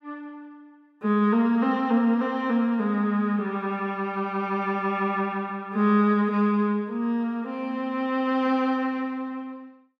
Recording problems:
none

